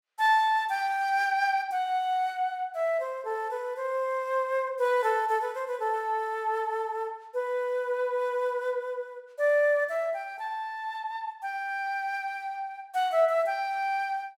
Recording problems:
none

